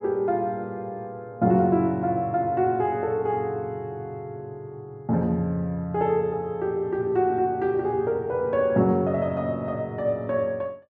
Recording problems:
none

